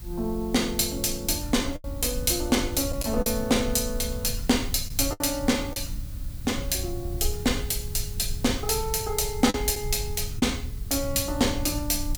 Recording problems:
hiss; slope -1 dB per octave, SNR 20 dB
low-frequency rumble; below 88 Hz, SNR 9 dB
lost packets; 3% of the sound replaced, filled with the last packet

